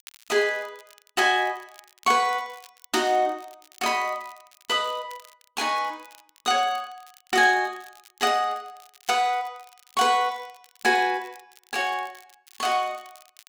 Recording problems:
crackling; vinyl, SNR 27 dB

